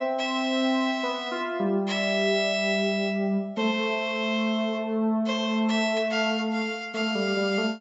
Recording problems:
treble missing; nothing above 8 kHz

